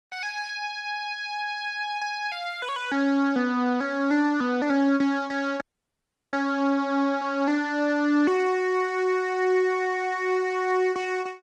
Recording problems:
lossy codec; Opus, log-spectral distance 2 dB
frozen audio; at 5.5 s for 0.5 s

